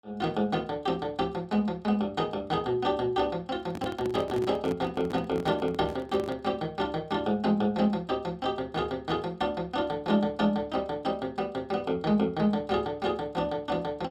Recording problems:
handling noise; from 3.5 to 6.5 s; peak -1 dB vs average level

